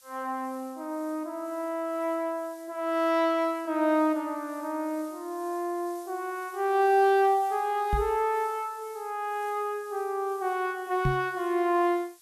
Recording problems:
background hiss; slope +4 dB per octave, SNR 24 dB
microphone thump; at 8 s and at 11 s; peak +3 dB vs average level

